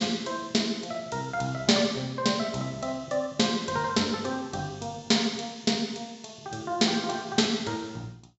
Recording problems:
treble cut off; nothing above 7.6 kHz

